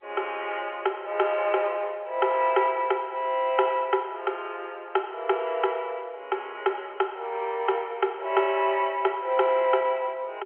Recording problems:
telephone audio; 340 Hz to 3.3 kHz, G.711

